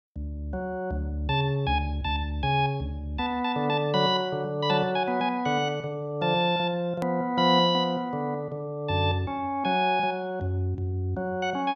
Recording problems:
hard cut with a click; at 7 s

